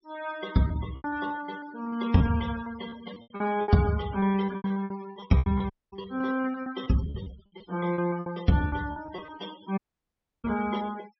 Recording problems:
treble cut off; nothing above 5.7 kHz
denoising artefacts; signal-to-artefact ratio 18 dB
lost packets; 15% of the sound replaced, filled with repeated pitch periods
dropout; at 5.5 s and at 10 s for 0.5 s

